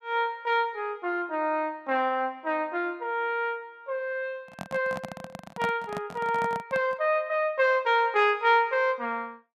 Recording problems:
handling noise; from 4.5 to 7 s; peak -3 dB vs average level

